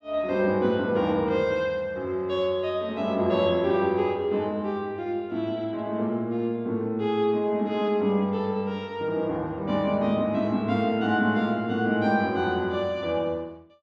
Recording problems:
none

